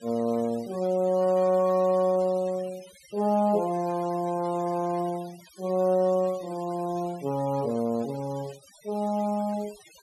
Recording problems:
noise reduction artefacts; signal-to-artefact ratio 22 dB

